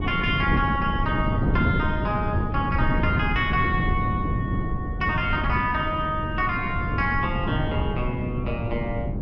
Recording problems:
wind on the microphone; below 220 Hz, SNR 1 dB

